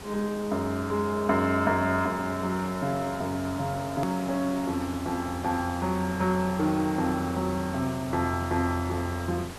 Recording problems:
background hiss; slope -4 dB per octave, SNR 13 dB
click at an edit; at 4 s

